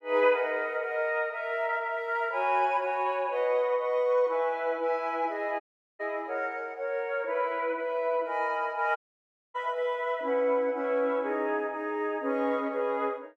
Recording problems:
audio cutting out; at 5.5 s and at 9 s for 0.5 s

